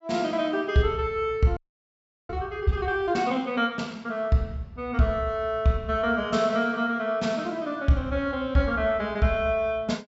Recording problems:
low-pass filter; nothing above 8 kHz
frozen audio; at 1.5 s for 0.5 s

